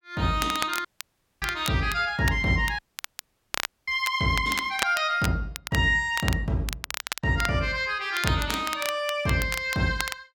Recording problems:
crackle; vinyl, SNR 9 dB
audio cutting out; at 1 s for 0.5 s and at 3 s for 1 s

